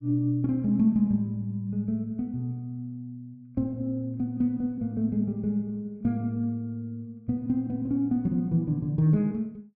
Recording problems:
none

